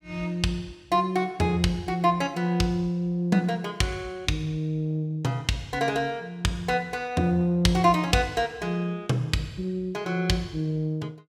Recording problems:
none

